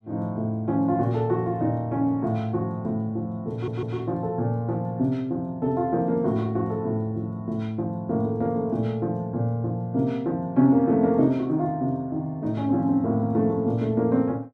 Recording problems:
audio stuttering; at 3.5 s

